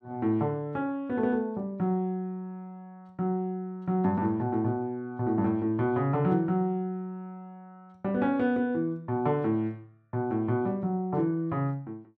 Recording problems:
none

